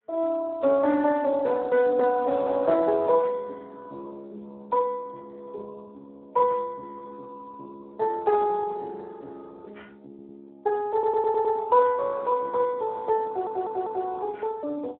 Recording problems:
telephone audio; 300 Hz to 2 kHz, Speex
stutter; at 10 s, at 11 s and at 13 s

